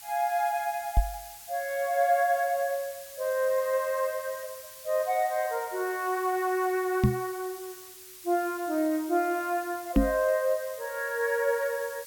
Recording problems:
background hiss; slope +3 dB per octave, SNR 15 dB
knock on the microphone; at 1 s, at 7 s and at 10 s; peak +10 dB vs average level

